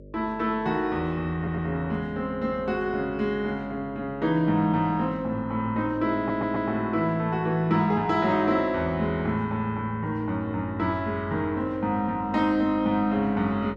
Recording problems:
hum; 50 Hz, harmonics up to 600 Hz, SNR 21 dB
audio stuttering; at 1.5 s and at 6 s

